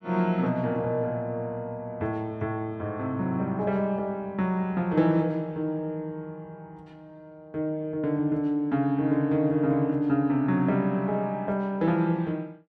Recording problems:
none

